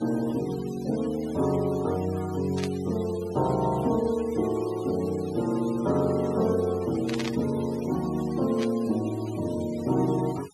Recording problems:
denoising artefacts; signal-to-artefact ratio 18 dB
static burst; at 2.5 s, at 7 s and at 8.5 s; peak -4 dB vs average level

